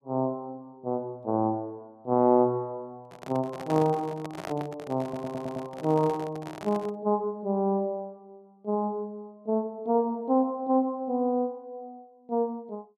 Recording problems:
microphone handling noise; from 3 to 7 s; peak -4 dB vs average level
audio stuttering; at 5 s

